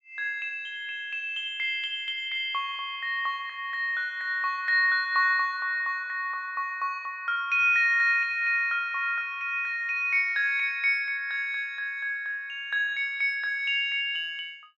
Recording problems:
none

